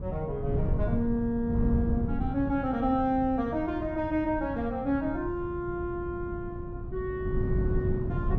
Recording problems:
wind on the microphone; below 160 Hz, SNR 4 dB

